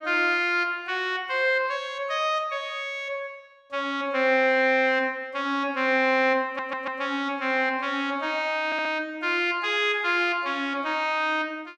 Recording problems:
stutter; at 6.5 s and at 8.5 s

